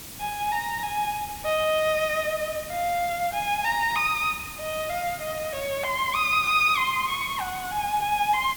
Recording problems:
hiss; SNR 12 dB

